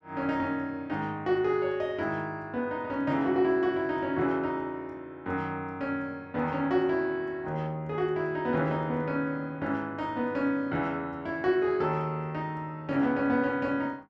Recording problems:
none

